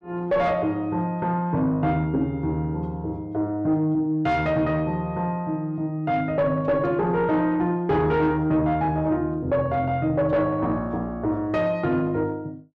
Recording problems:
distortion; soft clipping, signal-to-distortion ratio 11 dB

